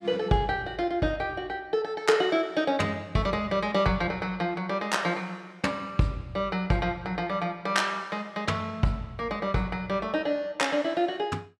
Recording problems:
none

